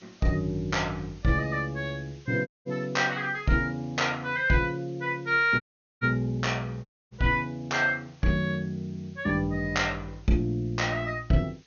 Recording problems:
low-pass filter; nothing above 6.7 kHz
background hiss; slope +1 dB per octave, SNR 30 dB
audio cutting out; at 2.5 s, at 5.5 s and at 7 s

